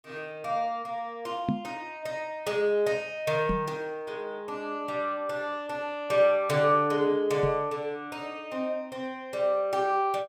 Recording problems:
knock on the microphone; at 1.5 s, at 3.5 s and at 7.5 s; peak +4 dB vs average level

